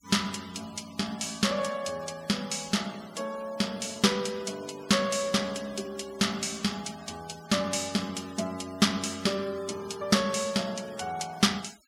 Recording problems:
noise reduction artefacts; signal-to-artefact ratio 18 dB

